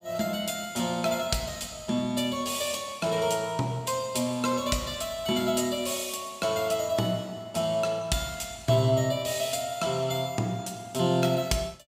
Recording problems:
none

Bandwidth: 15.5 kHz